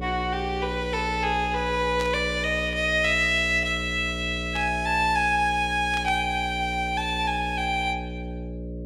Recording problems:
electrical hum; 60 Hz, harmonics up to 600 Hz, SNR 10 dB
static burst; at 2 s, at 4.5 s and at 6 s; peak -8 dB vs average level

